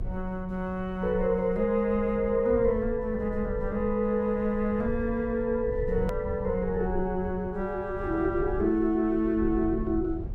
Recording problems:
low-frequency rumble; below 100 Hz, SNR 11 dB
click at an edit; at 6 s

